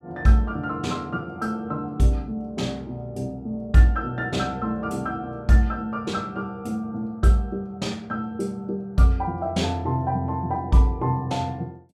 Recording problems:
none

